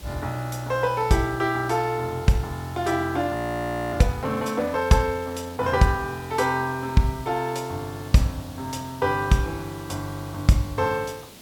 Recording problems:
background hiss; SNR 19 dB
audio freezing; at 3.5 s for 0.5 s

